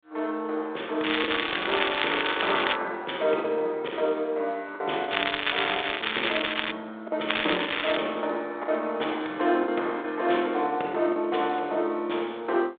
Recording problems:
phone line; 320 Hz to 3.8 kHz, G.726
lost packets; 4% of the sound replaced, filled with the last packet
crackle; from 1 to 3 s, from 5 to 6.5 s and at 7.5 s; loose cable, SNR 0 dB

